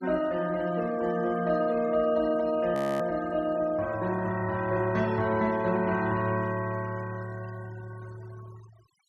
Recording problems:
noise reduction artefacts; signal-to-artefact ratio 20 dB
audio freezing; at 3 s

